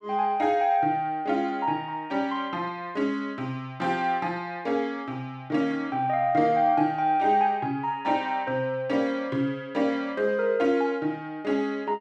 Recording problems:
none

